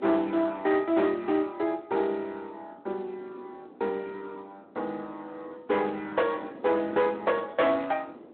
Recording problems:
phone line; 240 Hz to 3.8 kHz, Speex
distortion; hard clipping, signal-to-distortion ratio 11 dB
wind on the microphone; below 530 Hz, SNR 21 dB

